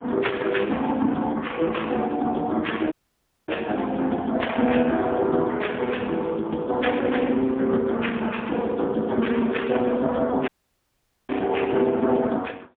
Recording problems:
phone line; 170 Hz to 3.5 kHz, AMR-NB, then MP3
dropout; at 3 s for 0.5 s and at 10 s for 1 s

